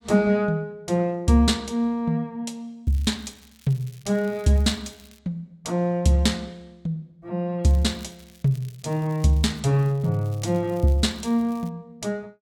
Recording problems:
crackle; from 3 to 5 s, from 7.5 to 9.5 s and from 9.5 to 12 s; loose cable, SNR 28 dB

